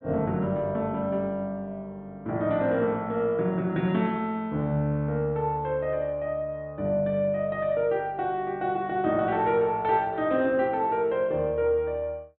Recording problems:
treble cut off; nothing above 4 kHz

